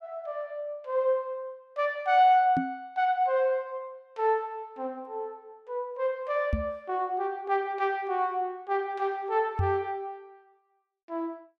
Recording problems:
microphone thump; at 2.5 s, at 6.5 s and at 9.5 s; peak +4 dB vs average level

